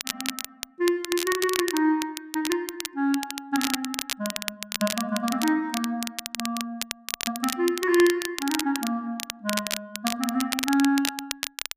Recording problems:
crackle; vinyl, SNR 5 dB

